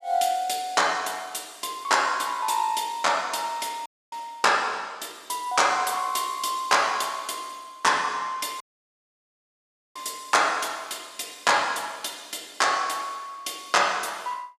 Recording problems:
audio cutting out; at 4 s and at 8.5 s for 1.5 s

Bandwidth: 14.5 kHz